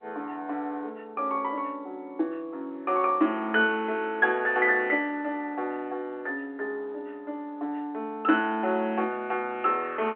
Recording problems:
phone line; 260 Hz to 3.3 kHz, G.711

